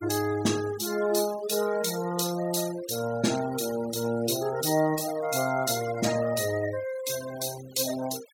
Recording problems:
noise reduction artefacts; signal-to-artefact ratio 13 dB

